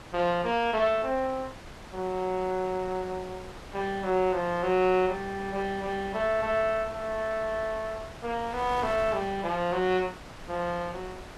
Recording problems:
wind on the microphone; below 1.8 kHz, SNR 15 dB

